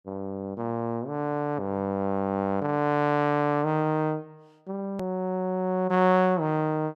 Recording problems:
edit click; at 5 s

